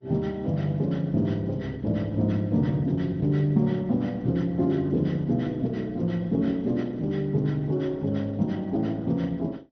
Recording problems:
low-pass filter; nothing above 6 kHz
lossy codec; Opus, log-spectral distance 2 dB

